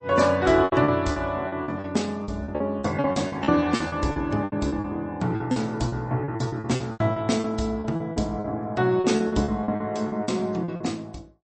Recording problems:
lossy codec; MP3, log-spectral distance 2 dB, nothing above 8.2 kHz
packet loss; 17% of the sound replaced, filled with repeated pitch periods

